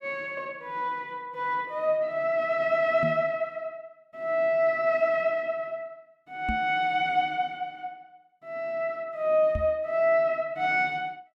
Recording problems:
microphone bump; at 3 s, at 6.5 s and at 9.5 s; peak -1 dB vs average level

